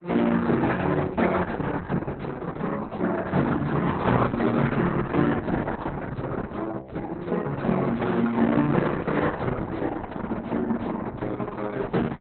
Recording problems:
lossy compression; Opus, then Opus, log-spectral distance 4 dB, nothing above 4 kHz

